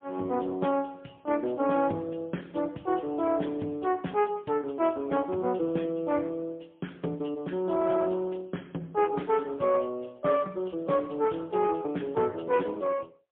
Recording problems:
telephone audio; 110 Hz to 3.3 kHz, AMR-NB, then MP3

